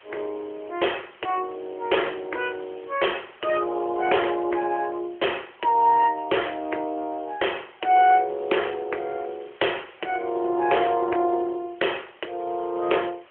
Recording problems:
phone line; 320 Hz to 3.3 kHz, AMR-NB
background hiss; SNR 27 dB

